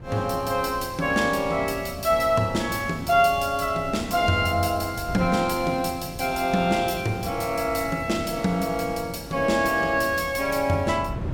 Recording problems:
wind on the microphone; below 210 Hz, SNR 15 dB

